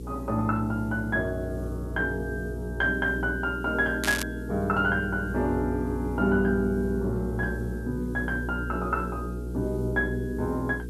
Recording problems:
electrical hum; 60 Hz, harmonics up to 480 Hz, SNR 7 dB
hiss; slope +2 dB per octave, SNR 29 dB
crackling; at 4 s; loose cable, SNR 6 dB

